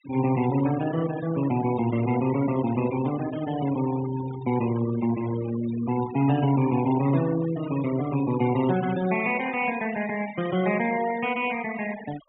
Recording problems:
low-pass filter; nothing above 4 kHz
noise reduction artefacts; signal-to-artefact ratio 14 dB

